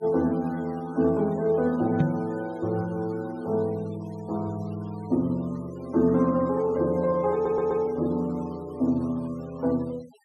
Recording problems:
denoising artefacts; signal-to-artefact ratio 24 dB
microphone thump; at 2 s; peak +5 dB vs average level
audio stuttering; at 7.5 s

